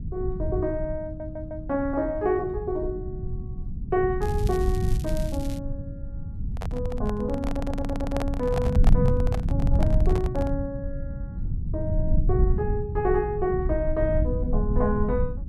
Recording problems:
rumble; below 110 Hz, SNR 0 dB
audio stuttering; at 1 s and at 7.5 s
crackling; from 4 to 5.5 s; loose cable, SNR 16 dB
handling noise; from 6.5 to 11 s; peak 0 dB vs average level

